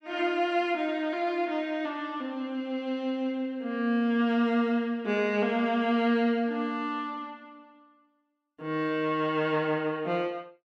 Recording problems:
none

